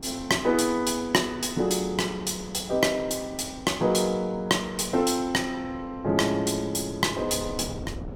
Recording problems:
wind noise; below 360 Hz, SNR 18 dB

